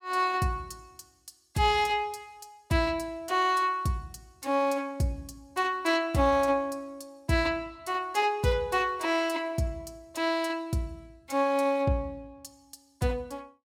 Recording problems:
none

